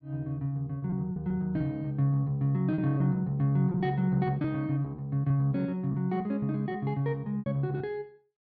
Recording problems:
packet loss; 6% of the sound replaced, filled with repeated pitch periods

